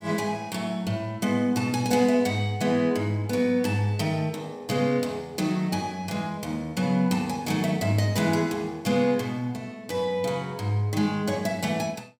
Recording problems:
none

